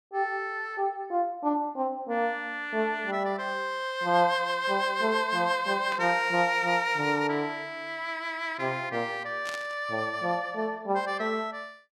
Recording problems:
burst of static; at 6 s and at 9.5 s; peak -6 dB vs average level

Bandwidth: 14 kHz